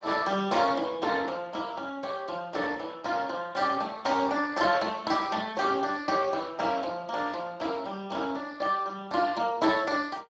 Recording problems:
codec artefacts; Speex, log-spectral distance 5 dB

